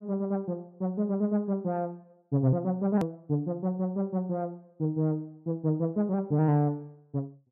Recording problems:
click at an edit; at 3 s

